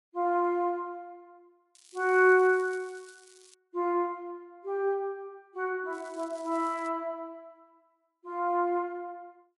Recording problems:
lossy compression; MP3, log-spectral distance 2 dB
crackling; from 2 to 3.5 s and at 6 s; loose cable, SNR 26 dB

